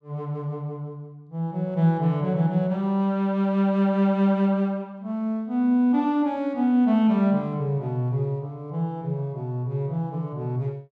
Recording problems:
none

